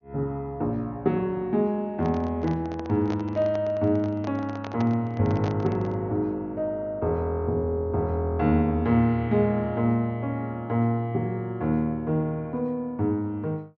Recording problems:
treble cut off; nothing above 6.6 kHz
microphone handling noise; from 2 to 6 s; peak -5 dB vs average level

